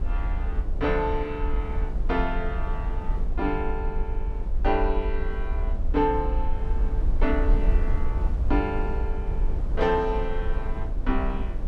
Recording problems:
rumble; below 50 Hz, SNR 0 dB
wind on the microphone; below 330 Hz, SNR 8 dB

